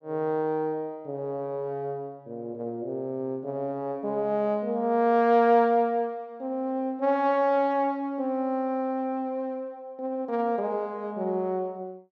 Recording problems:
none

